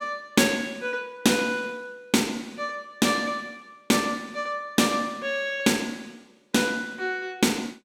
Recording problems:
none

